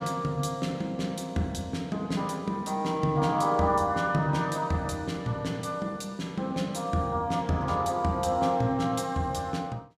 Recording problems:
none

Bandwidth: 14.5 kHz